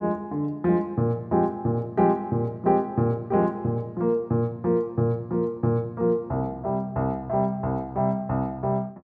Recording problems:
none

